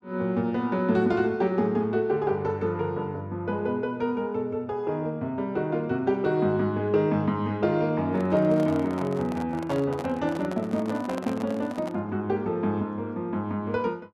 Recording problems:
handling noise; from 8 to 12 s; peak -5 dB vs average level

